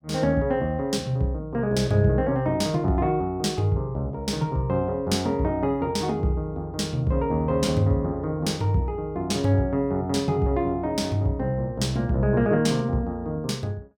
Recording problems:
none

